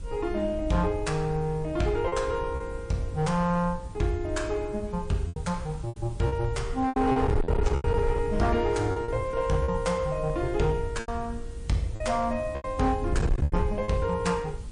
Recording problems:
lossy codec; MP3, log-spectral distance 2 dB, nothing above 9 kHz
distortion; hard clipping, signal-to-distortion ratio 11 dB
hiss; slope -1 dB per octave, SNR 26 dB
wind noise; below 110 Hz, SNR 7 dB
lost packets; 7% of the sound replaced, filled with repeated pitch periods

